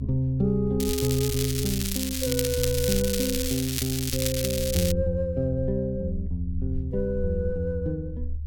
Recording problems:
low-frequency rumble; below 76 Hz, strongest tone 74 Hz, SNR 7 dB
crackling; from 1 to 5 s; loose cable, SNR 2 dB

